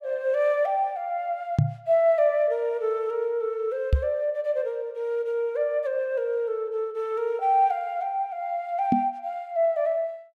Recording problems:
microphone thump; at 1.5 s, at 4 s and at 9 s; peak +8 dB vs average level

